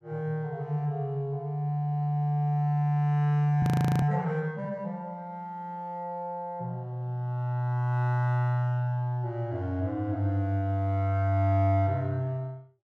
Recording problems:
audio freezing; at 3.5 s

